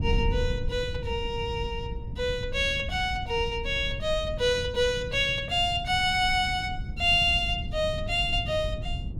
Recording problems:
wind on the microphone; below 120 Hz, SNR 9 dB

